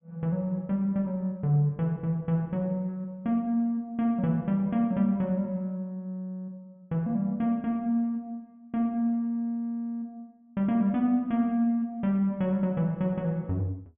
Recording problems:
treble missing; nothing above 3.4 kHz

